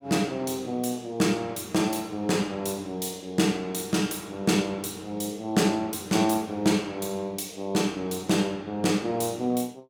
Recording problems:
none

